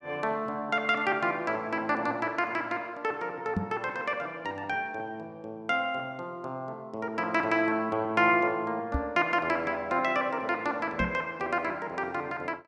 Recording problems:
microphone bump; at 3.5 s, at 9 s and at 11 s; peak +3 dB vs average level

